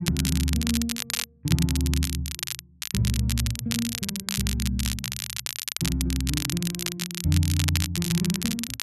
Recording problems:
crackling; vinyl, SNR 3 dB

